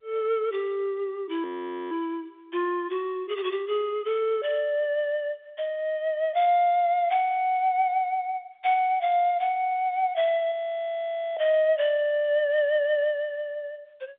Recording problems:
telephone audio; 190 Hz to 3.6 kHz, G.711
frozen audio; at 1.5 s and at 11 s for 1 s

